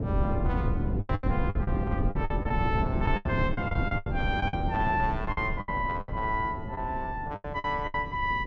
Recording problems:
rumble; below 190 Hz, SNR 0 dB
lost packets; 14% of the sound replaced, filled with the last packet

